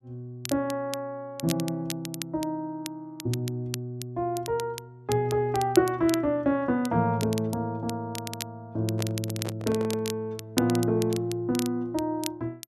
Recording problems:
crackle; vinyl, SNR 11 dB
handling noise; from 9 to 10 s; peak -5 dB vs average level

